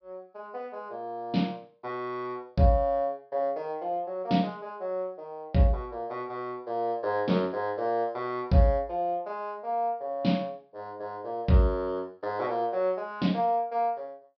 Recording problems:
treble missing; nothing above 5.5 kHz

